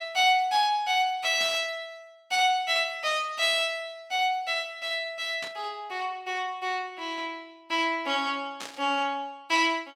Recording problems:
static burst; at 1.5 s, at 5.5 s and at 8.5 s; peak -7 dB vs average level

